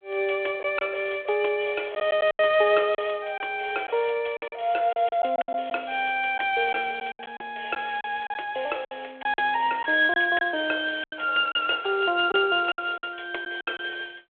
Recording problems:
telephone audio; 320 Hz to 3.4 kHz, G.726
packet loss; 8% of the sound replaced, filled with silence

